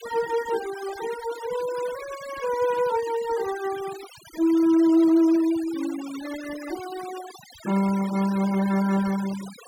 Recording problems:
noise reduction artefacts; signal-to-artefact ratio 16 dB

